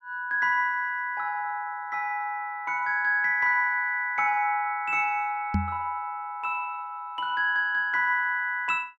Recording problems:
microphone bump; at 5.5 s; peak +3 dB vs average level

